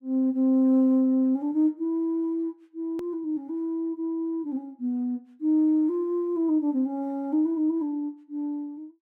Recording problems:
hard cut with a click; at 3 s

